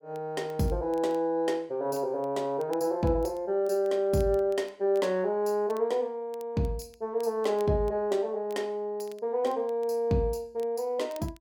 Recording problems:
crackling; vinyl, SNR 29 dB

